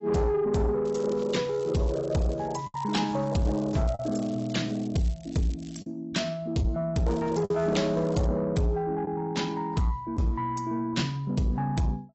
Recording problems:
lossy compression; AAC, log-spectral distance 3 dB, nothing above 7.8 kHz
distorted audio; soft clipping, signal-to-distortion ratio 12 dB
lost packets; 2% of the sound replaced, filled with the last packet
crackle; from 1 to 6 s and from 7 to 8.5 s; loose cable, SNR 24 dB

